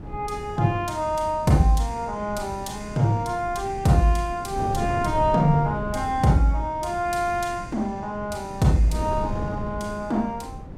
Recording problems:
wind noise; below 250 Hz, SNR 11 dB

